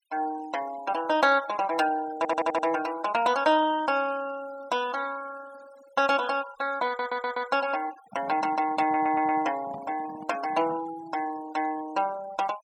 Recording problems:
noise reduction artefacts; signal-to-artefact ratio 19 dB
stutter; at 2 s, at 7 s and at 9 s
microphone handling noise; from 8 to 11 s; peak -11 dB vs average level

